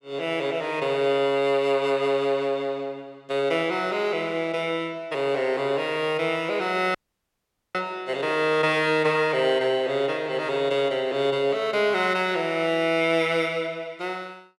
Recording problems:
audio cutting out; at 7 s for 1 s

